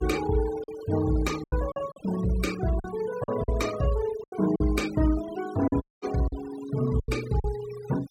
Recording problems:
denoising artefacts; signal-to-artefact ratio 15 dB
lost packets; 8% of the sound replaced, filled with silence
audio cutting out; at 6 s

